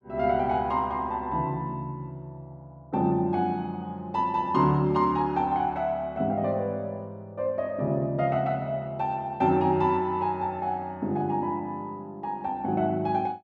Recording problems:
none

